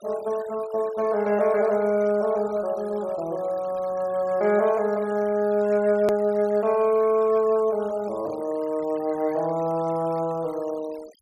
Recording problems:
noise reduction artefacts; signal-to-artefact ratio 23 dB
hard cut with a click; at 6 s

